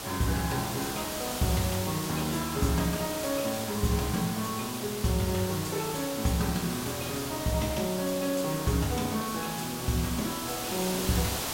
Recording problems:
hiss; slope -2 dB per octave, SNR 4 dB

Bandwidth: 16 kHz